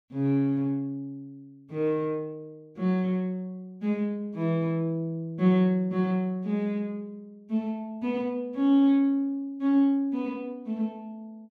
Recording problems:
none

